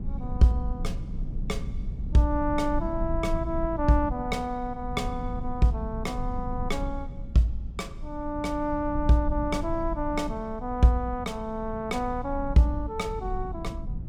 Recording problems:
rumble; below 88 Hz, SNR 8 dB

